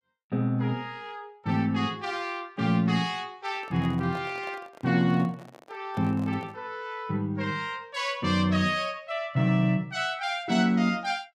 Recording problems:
handling noise; from 3.5 to 6.5 s; peak -12 dB vs average level

